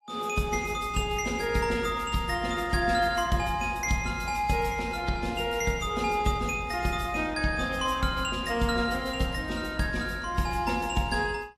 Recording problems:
codec artefacts; AAC, log-spectral distance 4 dB

